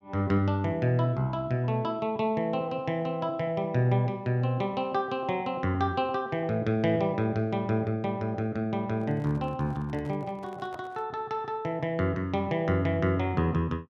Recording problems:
handling noise; from 9 to 11 s; peak -12 dB vs average level

